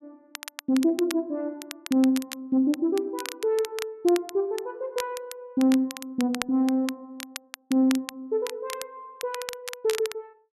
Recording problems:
crackling; vinyl, SNR 12 dB

